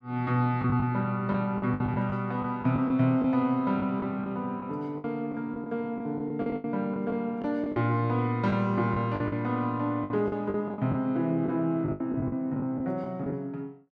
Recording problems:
lost packets; 11% of the sound replaced, filled with the last packet

